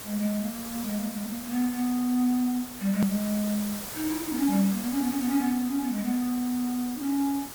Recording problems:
background hiss; slope -2 dB per octave, SNR 9 dB
click at an edit; at 3 s

